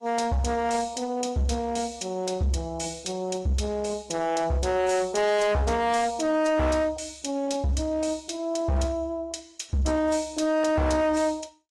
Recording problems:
codec artefacts; AAC, log-spectral distance 3 dB
distorted audio; hard clipping, signal-to-distortion ratio 7 dB

